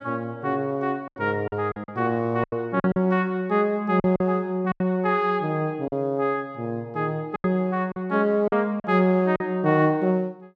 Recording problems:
lost packets; 8% of the sound replaced, filled with silence

